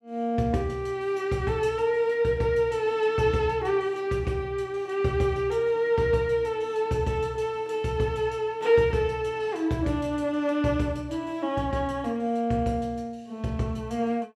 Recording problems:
none

